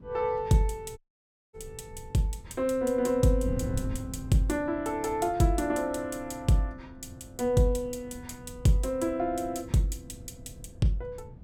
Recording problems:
wind noise; below 150 Hz, SNR 15 dB
dropout; at 1 s for 0.5 s

